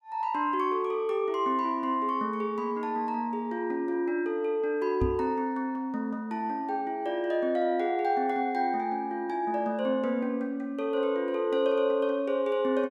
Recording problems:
knock on the microphone; at 5 s; peak +3 dB vs average level

